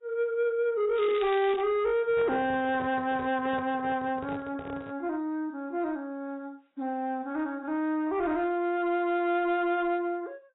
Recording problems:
lossy codec; AAC, log-spectral distance 2 dB, nothing above 3.7 kHz
distorted audio; soft clipping, signal-to-distortion ratio 11 dB
crackle; at 1 s; loose cable, SNR 16 dB
handling noise; from 2 to 5 s; peak -7 dB vs average level

